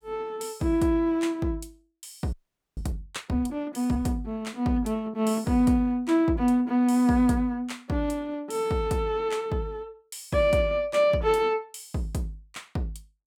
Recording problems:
audio freezing; at 2.5 s

